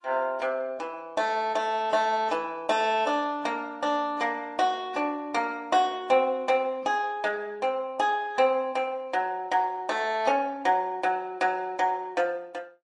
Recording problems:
lossy compression; AAC, then MP3, log-spectral distance 2 dB

